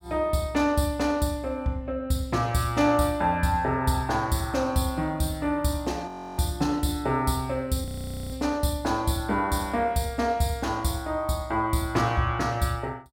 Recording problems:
audio freezing; at 6 s and at 8 s

